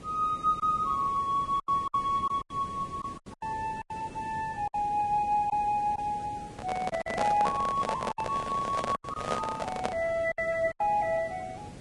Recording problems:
lossy compression; Vorbis, log-spectral distance 3 dB, nothing above 10.1 kHz
background hiss; slope -6 dB per octave, SNR 15 dB
packet loss; 9% of the sound replaced, filled with silence
handling noise; from 6.5 to 10 s; peak +2 dB vs average level

